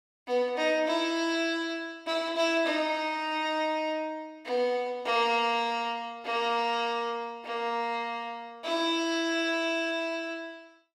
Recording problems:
none

